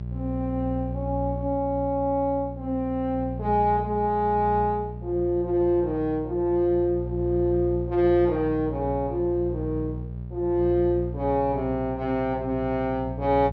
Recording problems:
hum; 60 Hz, harmonics up to 600 Hz, SNR 8 dB

